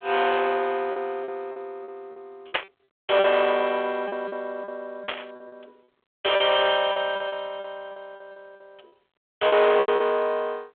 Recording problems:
telephone audio; 300 Hz to 3.4 kHz, G.726
distorted audio; soft clipping, signal-to-distortion ratio 5 dB
lost packets; 11% of the sound replaced, filled with repeated pitch periods
static burst; at 2.5 s and at 5 s; peak +4 dB vs average level

